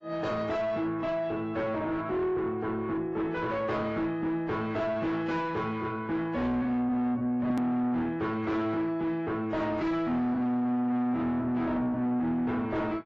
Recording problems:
lossy codec; AAC, log-spectral distance 2 dB, nothing above 13.1 kHz
distortion; soft clipping, signal-to-distortion ratio 7 dB
click at an edit; at 7.5 s

